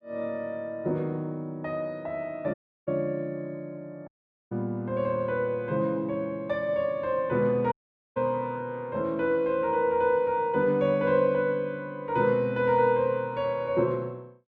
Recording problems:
audio cutting out; at 2.5 s, at 4 s and at 7.5 s

